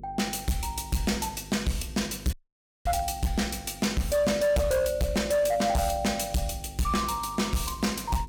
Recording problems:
distortion; hard clipping, signal-to-distortion ratio 7 dB
hum; 50 Hz, harmonics up to 500 Hz, SNR 19 dB
dropout; at 2.5 s for 0.5 s

